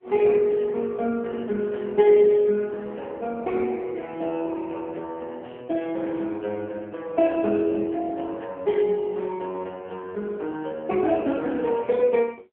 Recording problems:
phone line; 190 Hz to 3.3 kHz, AMR-NB

